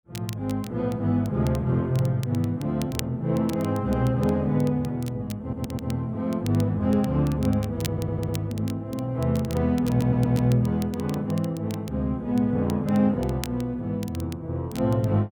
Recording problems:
crackling; vinyl, SNR 19 dB
audio stuttering; at 5.5 s, at 8 s and at 10 s

